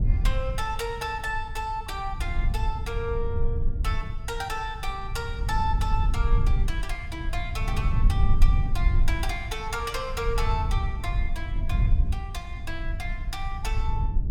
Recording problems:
rumble; below 68 Hz, SNR -4 dB

